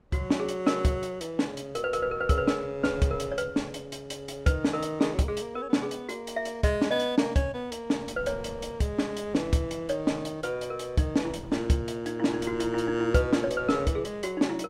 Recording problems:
wind on the microphone; below 390 Hz, SNR 20 dB

